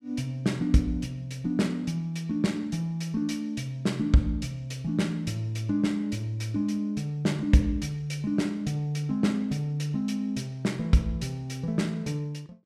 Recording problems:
none

